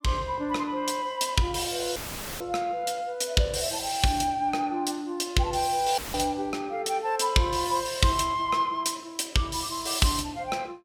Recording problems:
audio cutting out; at 2 s and at 6 s; filled with static

